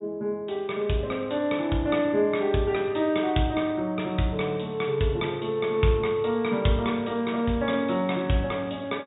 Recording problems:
treble cut off; nothing above 4 kHz

